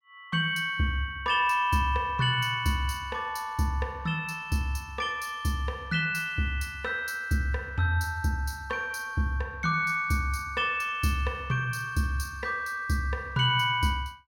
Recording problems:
none

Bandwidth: 17 kHz